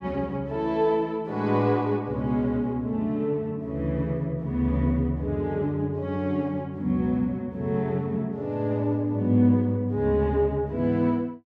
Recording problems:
none

